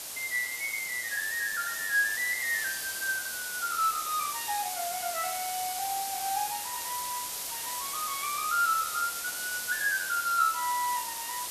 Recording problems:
hiss; slope +1 dB per octave, SNR 3 dB

